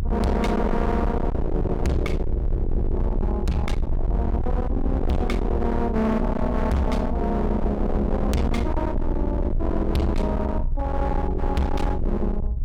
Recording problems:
distorted audio; hard clipping, signal-to-distortion ratio 6 dB
low-frequency rumble; below 86 Hz, SNR 2 dB

